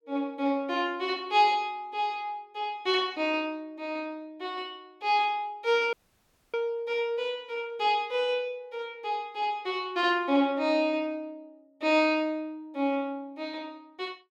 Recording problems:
audio cutting out; at 6 s for 0.5 s

